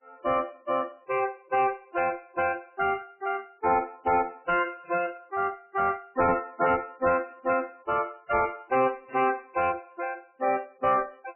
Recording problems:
lossy codec; MP3, log-spectral distance 3 dB, nothing above 2.6 kHz
distortion; soft clipping, signal-to-distortion ratio 11 dB

